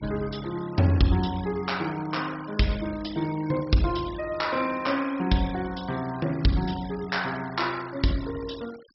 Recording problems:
low-pass filter; nothing above 5.6 kHz
denoising artefacts; signal-to-artefact ratio 18 dB

